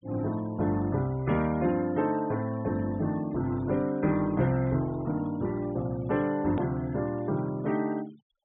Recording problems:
treble missing; nothing above 4 kHz
denoising artefacts; signal-to-artefact ratio 23 dB
hard cut with a click; at 6.5 s

